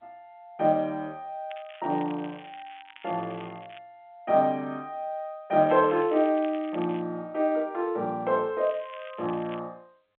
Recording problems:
phone line; 240 Hz to 3.6 kHz, G.711
crackle; from 1.5 to 4 s, from 5.5 to 7 s and from 8.5 to 9.5 s; loose cable, SNR 22 dB

